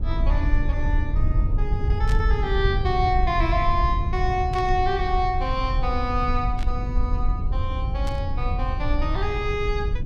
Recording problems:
rumble; below 76 Hz, SNR -1 dB
burst of static; 4 times, first at 2 s; peak -8 dB vs average level

